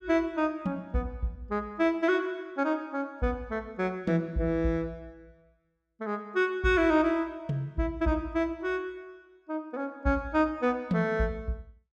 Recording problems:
none

